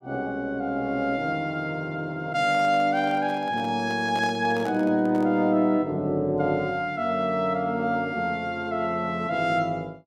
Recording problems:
microphone handling noise; from 2.5 to 5.5 s; peak -8 dB vs average level

